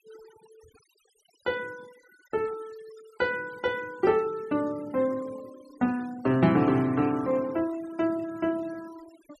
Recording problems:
noise reduction artefacts; signal-to-artefact ratio 21 dB

